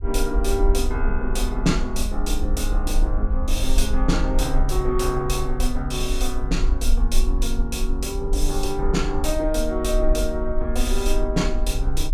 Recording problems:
low-frequency rumble; below 44 Hz, strongest tone 26 Hz, SNR 1 dB

